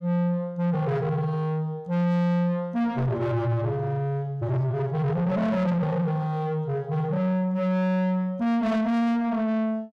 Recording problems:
distortion; soft clipping, signal-to-distortion ratio 7 dB

